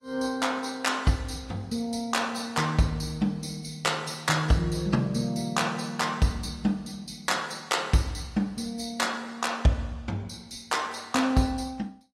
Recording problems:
codec artefacts; AAC, log-spectral distance 3 dB

